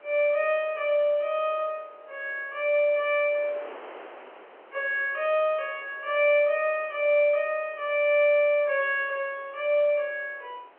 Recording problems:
telephone audio; 260 Hz to 3.3 kHz, G.711
wind noise; below 1.4 kHz, SNR 24 dB

